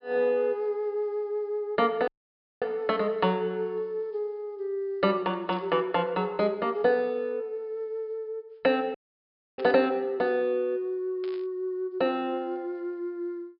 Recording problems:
low-pass filter; nothing above 5.5 kHz
audio cutting out; at 2 s for 0.5 s and at 9 s for 0.5 s
static burst; at 5.5 s, at 9.5 s and at 11 s; peak -12 dB vs average level

